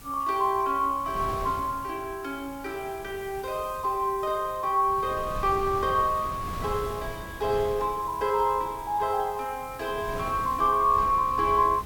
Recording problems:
hiss; slope 0 dB per octave, SNR 22 dB
wind noise; below 440 Hz, SNR 15 dB

